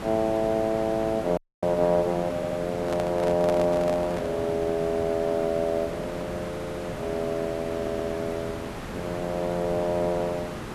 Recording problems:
hiss; slope -6 dB per octave, SNR 9 dB
dropout; at 1.5 s
stutter; at 2.5 s, at 6.5 s and at 8 s
microphone handling noise; from 3 to 4.5 s; peak -1 dB vs average level

